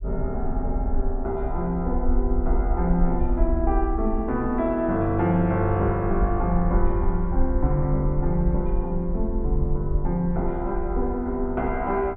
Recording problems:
treble missing; nothing above 4 kHz
low-frequency rumble; below 54 Hz, SNR 4 dB

